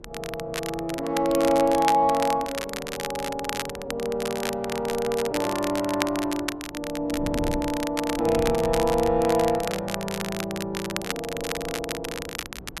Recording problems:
wind on the microphone; below 320 Hz, SNR 15 dB
crackling; vinyl, SNR 8 dB

